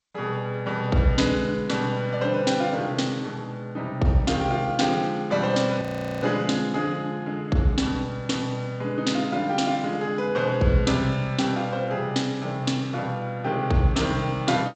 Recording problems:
codec artefacts; G.722, then G.722, log-spectral distance 2 dB, nothing above 7.3 kHz
frozen audio; at 6 s

